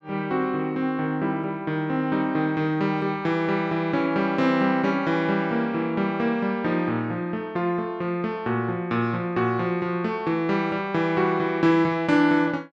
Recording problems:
none

